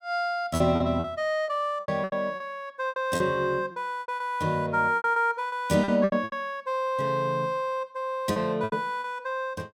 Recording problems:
lost packets; 12% of the sound replaced, filled with repeated pitch periods

